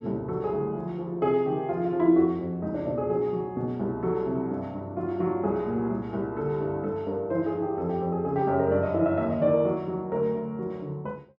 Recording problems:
none

